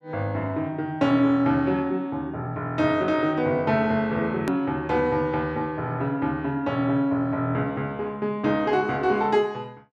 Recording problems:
hard cut with a click; at 4.5 s

